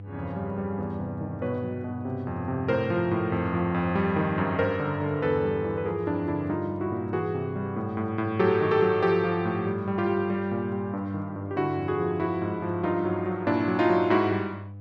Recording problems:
hum; 50 Hz, harmonics up to 500 Hz, SNR 13 dB

